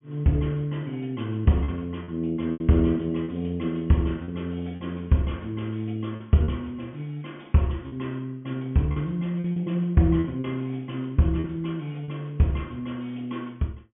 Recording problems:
low-pass filter; nothing above 3.2 kHz
packet loss; 5% of the sound replaced, filled with repeated pitch periods

